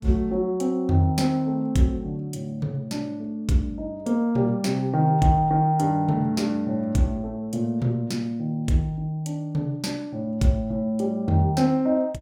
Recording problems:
none

